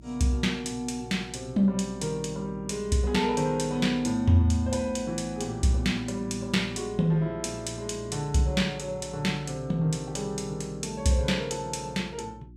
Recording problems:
hum; 60 Hz, harmonics up to 360 Hz, SNR 19 dB

